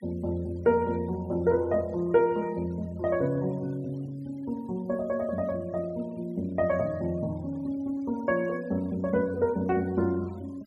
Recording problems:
denoising artefacts; signal-to-artefact ratio 26 dB

